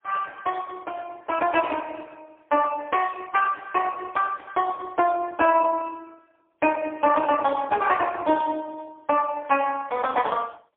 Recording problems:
telephone audio; 240 Hz to 3.1 kHz, AMR-NB, then MP3

